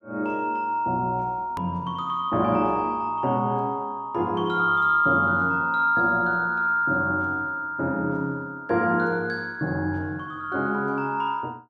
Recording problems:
edit click; at 1.5 s

